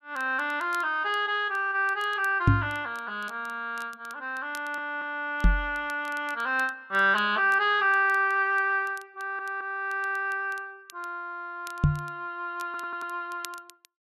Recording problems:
crackle; vinyl, SNR 24 dB
microphone thump; at 2.5 s, at 5.5 s and at 12 s; peak +10 dB vs average level
stutter; at 4.5 s, at 9 s and at 13 s

